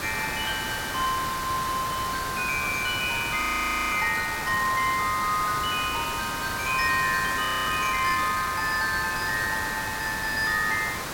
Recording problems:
hiss; SNR 6 dB
frozen audio; at 3.5 s for 0.5 s and at 7.5 s

